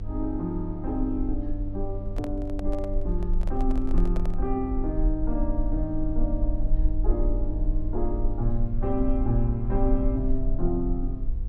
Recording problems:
mains hum; 50 Hz, harmonics up to 700 Hz, SNR 8 dB
rumble; below 42 Hz, strongest tone 22 Hz, SNR 0 dB
handling noise; from 2 to 4.5 s; peak -5 dB vs average level

